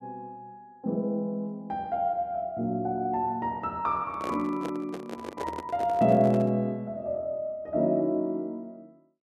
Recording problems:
microphone handling noise; from 4 to 6.5 s; peak -2 dB vs average level

